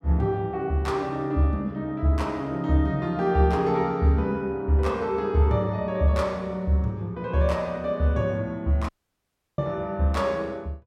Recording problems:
audio cutting out; at 9 s for 0.5 s

